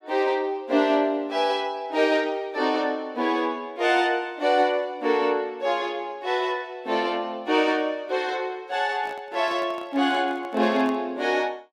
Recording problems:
handling noise; from 9 to 11 s; peak -12 dB vs average level

